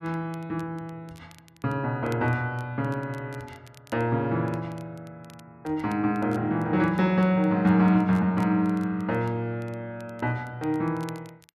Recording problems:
crackle; vinyl, SNR 29 dB

